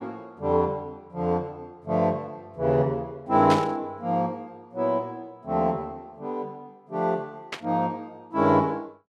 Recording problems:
static burst; at 3.5 s and at 7.5 s; peak -1 dB vs average level

